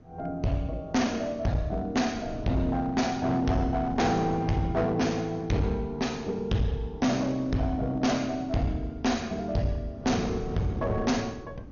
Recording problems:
lossy compression; MP2, log-spectral distance 2 dB, nothing above 6.7 kHz
distortion; hard clipping, uneven, signal-to-distortion ratio 6 dB
wind noise; below 280 Hz, SNR 15 dB

